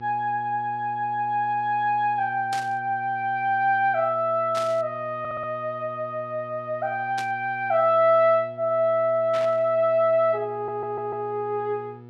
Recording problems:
hum; 60 Hz, harmonics up to 1.3 kHz, SNR 20 dB
burst of static; 4 times, first at 2.5 s; peak -7 dB vs average level
audio stuttering; at 5 s and at 11 s

